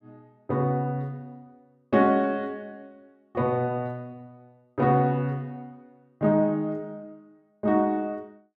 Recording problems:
none

